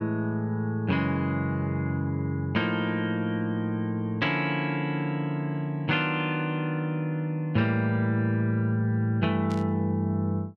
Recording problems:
burst of static; at 9.5 s; peak -13 dB vs average level

